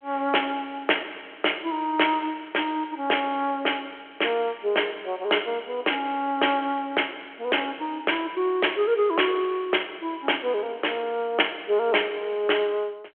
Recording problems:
telephone audio; 320 Hz to 3.3 kHz, G.726

